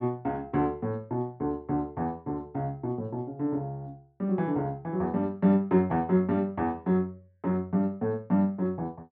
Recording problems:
none

